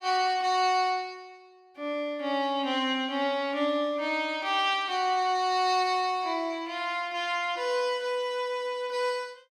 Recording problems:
none

